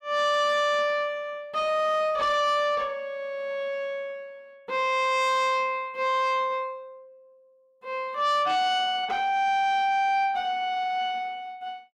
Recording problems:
distorted audio; soft clipping, signal-to-distortion ratio 11 dB

